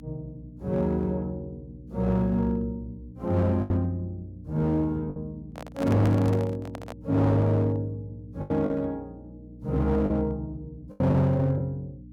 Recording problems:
distortion; hard clipping, uneven, signal-to-distortion ratio 11 dB
hum; 60 Hz, harmonics up to 300 Hz, SNR 19 dB
lost packets; 4% of the sound replaced, filled with the last packet
handling noise; from 5.5 to 7 s; peak -5 dB vs average level

